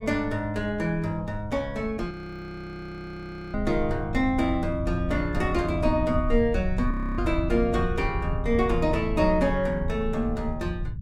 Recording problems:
low-frequency rumble; below 88 Hz, SNR 7 dB
audio freezing; at 2 s for 1.5 s and at 7 s

